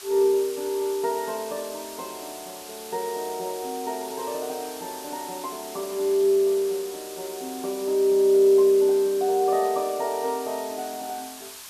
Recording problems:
background hiss; SNR 15 dB

